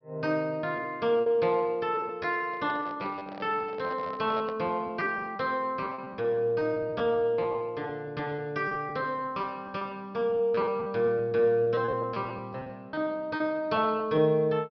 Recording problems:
treble missing; nothing above 5.5 kHz
packet loss; 12% of the sound replaced, filled with repeated pitch periods
handling noise; from 2.5 to 4.5 s; peak -5 dB vs average level

